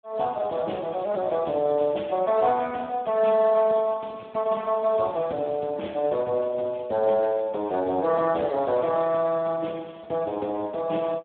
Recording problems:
telephone audio; 220 Hz to 2.9 kHz, Speex

